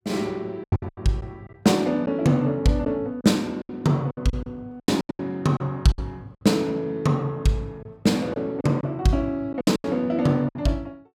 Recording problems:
packet loss; 11% of the sound replaced, filled with silence

